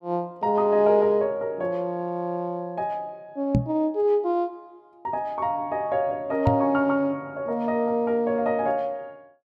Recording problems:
microphone thump; at 3.5 s and at 6.5 s; peak +6 dB vs average level

